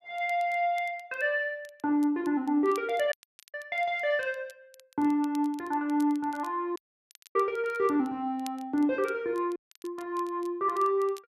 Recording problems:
crackle; vinyl, SNR 26 dB
audio cutting out; at 3 s, at 7 s for 0.5 s and at 9.5 s

